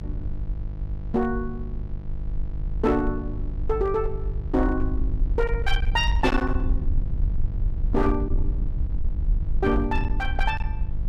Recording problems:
distorted audio; hard clipping, signal-to-distortion ratio 12 dB
electrical hum; 50 Hz, harmonics up to 500 Hz, SNR 9 dB
wind noise; below 58 Hz, SNR 3 dB

